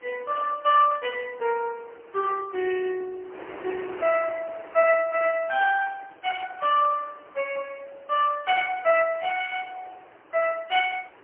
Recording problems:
telephone audio; 260 Hz to 3.1 kHz, AMR-NB, then MP3
wind noise; below 1.7 kHz, SNR 22 dB

